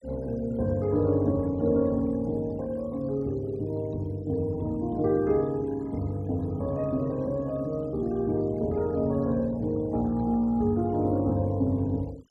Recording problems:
denoising artefacts; signal-to-artefact ratio 28 dB

